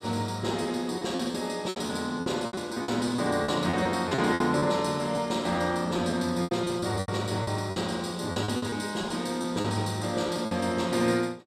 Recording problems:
packet loss; 12% of the sound replaced, filled with repeated pitch periods

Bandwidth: 15 kHz